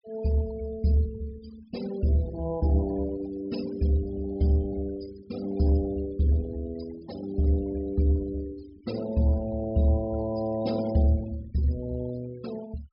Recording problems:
low-pass filter; nothing above 5.5 kHz
denoising artefacts; signal-to-artefact ratio 19 dB

